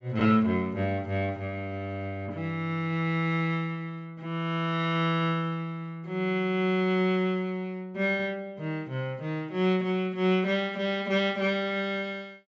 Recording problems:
treble missing; nothing above 8 kHz

